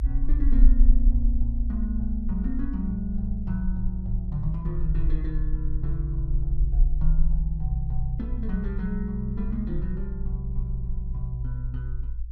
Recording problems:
low-frequency rumble; below 56 Hz, SNR -4 dB

